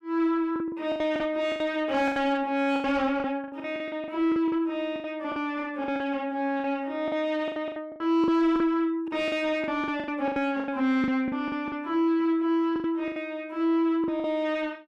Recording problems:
distorted audio; soft clipping, signal-to-distortion ratio 10 dB
lost packets; 15% of the sound replaced, filled with the last packet

